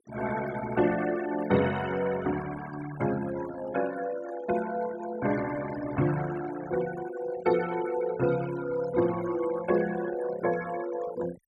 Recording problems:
noise reduction artefacts; signal-to-artefact ratio 12 dB

